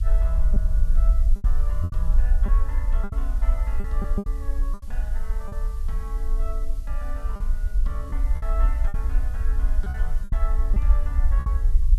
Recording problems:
background hiss; SNR 15 dB
rumble; below 50 Hz, SNR -14 dB
lost packets; 8% of the sound replaced, filled with repeated pitch periods

